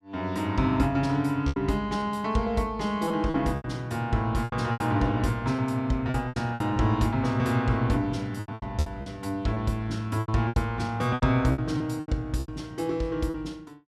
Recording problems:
packet loss; 10% of the sound replaced, filled with repeated pitch periods

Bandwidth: 14.5 kHz